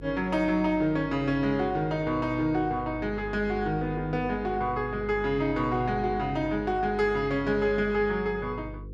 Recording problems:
electrical hum; 50 Hz, harmonics up to 500 Hz, SNR 15 dB

